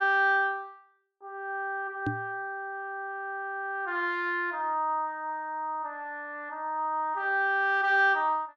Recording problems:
microphone thump; at 2 s; peak +1 dB vs average level

